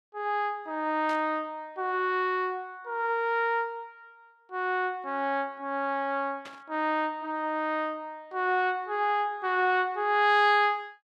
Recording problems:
static burst; at 1 s and at 6.5 s; peak -12 dB vs average level

